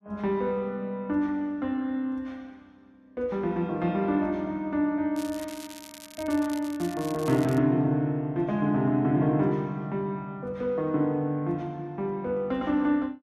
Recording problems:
crackling; from 5 to 7.5 s; loose cable, SNR 17 dB

